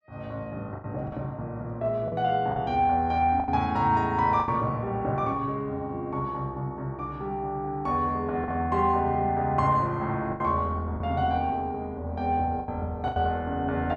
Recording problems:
packet loss; 5% of the sound replaced, filled with the last packet

